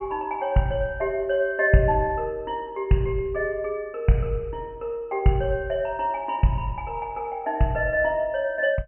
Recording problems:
treble cut off; nothing above 3 kHz

